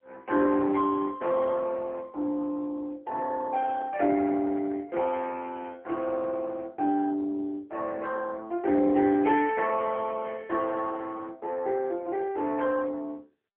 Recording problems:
phone line; 260 Hz to 3.1 kHz, AMR-NB

